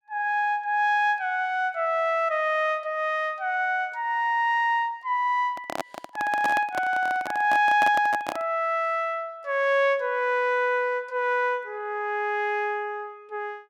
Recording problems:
microphone handling noise; from 5.5 to 8.5 s; peak -1 dB vs average level

